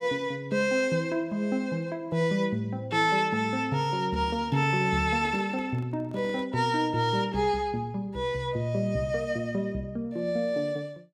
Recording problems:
microphone handling noise; from 4 to 6.5 s; peak -9 dB vs average level

